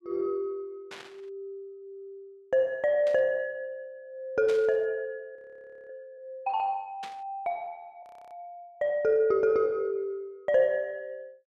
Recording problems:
static burst; 4 times, first at 1 s; peak -10 dB vs average level
frozen audio; at 5.5 s for 0.5 s and at 8 s

